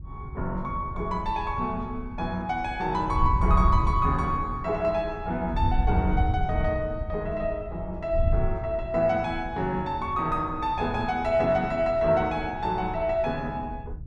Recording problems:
wind noise; below 88 Hz, SNR 6 dB

